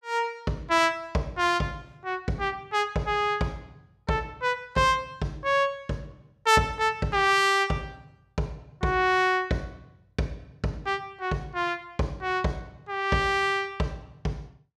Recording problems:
none

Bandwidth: 15 kHz